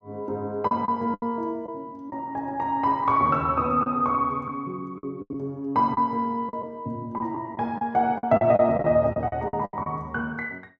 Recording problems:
lost packets; 9% of the sound replaced, filled with the last packet

